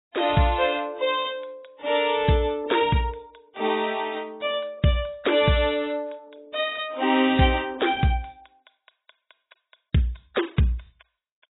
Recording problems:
lossy codec; AAC, log-spectral distance 9 dB, nothing above 3.8 kHz

